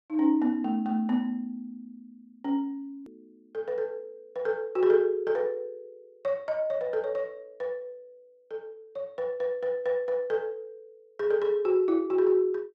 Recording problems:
edit click; at 3 s

